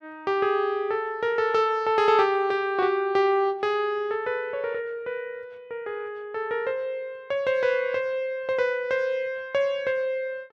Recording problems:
none

